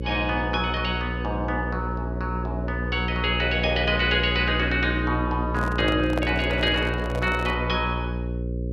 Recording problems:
electrical hum; 60 Hz, harmonics up to 540 Hz, SNR 4 dB
microphone handling noise; from 5.5 to 7.5 s; peak +1 dB vs average level

